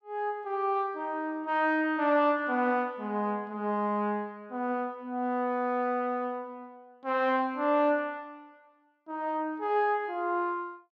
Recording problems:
none

